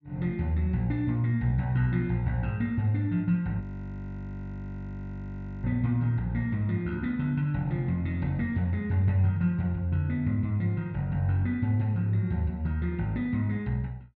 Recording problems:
treble missing; nothing above 7.2 kHz
frozen audio; at 3.5 s for 2 s

